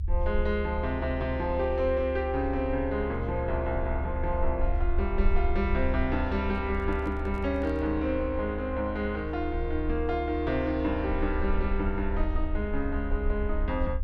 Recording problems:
rumble; below 72 Hz, SNR 3 dB
handling noise; from 6.5 to 8 s; peak -13 dB vs average level

